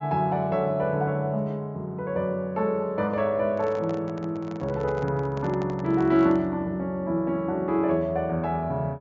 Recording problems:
treble missing; nothing above 7.4 kHz
microphone handling noise; from 3.5 to 6.5 s; peak -9 dB vs average level

